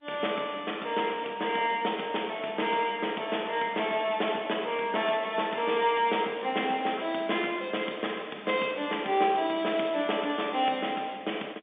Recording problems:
telephone audio; 240 Hz to 3.6 kHz, G.711

